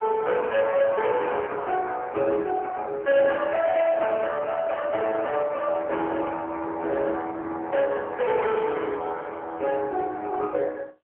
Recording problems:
telephone audio; 280 Hz to 3.4 kHz, AMR-NB
distortion; hard clipping, signal-to-distortion ratio 12 dB

